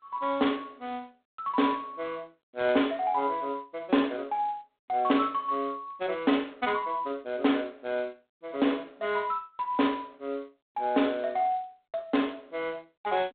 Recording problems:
phone line; 190 Hz to 3.7 kHz, G.726

